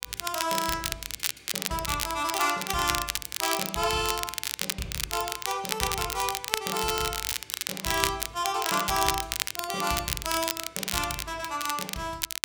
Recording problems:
crackling; vinyl, SNR 1 dB

